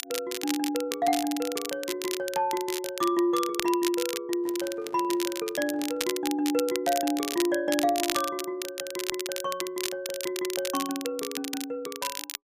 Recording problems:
crackle; vinyl, SNR 5 dB
handling noise; from 4.5 to 6 s; peak -10 dB vs average level

